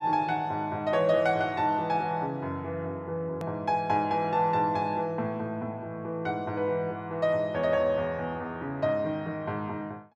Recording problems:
edit click; at 3.5 s

